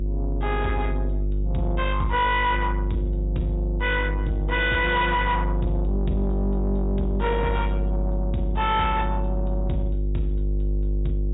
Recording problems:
treble cut off; nothing above 4 kHz
distortion; soft clipping, signal-to-distortion ratio 11 dB
electrical hum; 50 Hz, harmonics up to 450 Hz, SNR 1 dB

